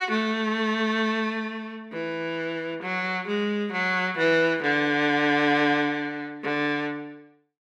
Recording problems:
none

